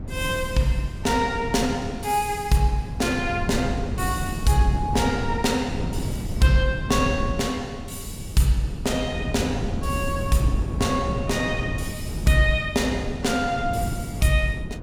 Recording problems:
wind noise; below 200 Hz, SNR 7 dB

